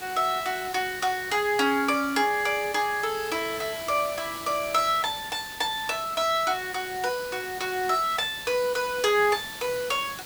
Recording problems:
background hiss; slope -1 dB per octave, SNR 13 dB

